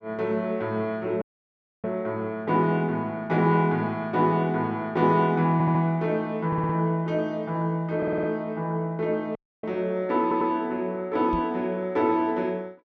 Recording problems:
audio cutting out; at 1 s for 0.5 s and at 9.5 s
audio stuttering; 4 times, first at 5.5 s
microphone thump; at 11 s; peak -4 dB vs average level

